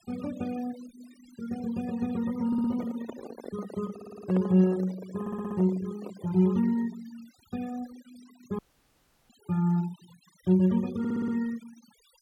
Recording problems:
noise reduction artefacts; signal-to-artefact ratio 20 dB
handling noise; from 2.5 to 6.5 s; peak -2 dB vs average level
audio stuttering; 4 times, first at 2.5 s
audio cutting out; at 8.5 s for 0.5 s

